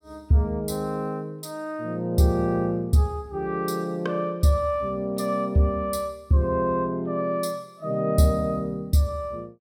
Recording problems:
none

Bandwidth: 16.5 kHz